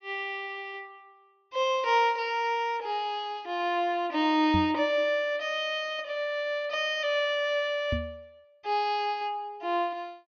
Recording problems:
treble cut off; nothing above 6.3 kHz
microphone bump; at 4.5 s and at 8 s; peak +2 dB vs average level

